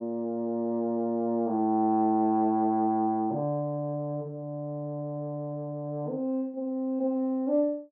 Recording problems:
none

